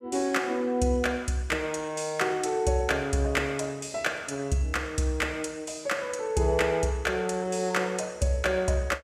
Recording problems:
none

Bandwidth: 15 kHz